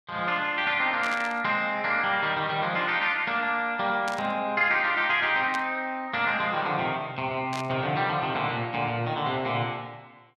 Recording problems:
burst of static; 4 times, first at 1 s; peak -7 dB vs average level

